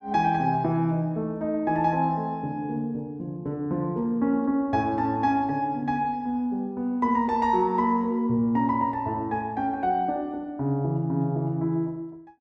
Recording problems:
none

